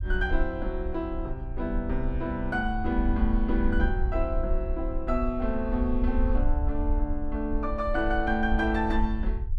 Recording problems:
low-frequency rumble; below 54 Hz, SNR 2 dB

